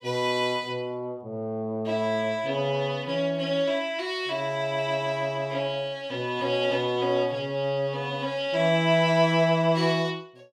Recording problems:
none

